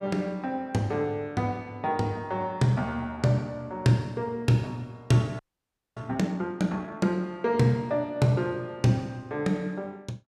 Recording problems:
audio freezing; at 5.5 s for 0.5 s

